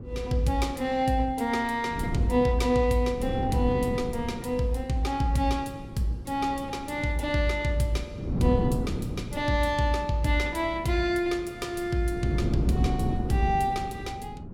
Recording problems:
wind noise; below 250 Hz, SNR 7 dB

